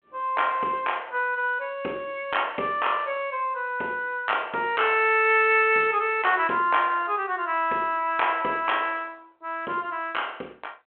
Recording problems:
phone line; 280 Hz to 3.2 kHz, G.726

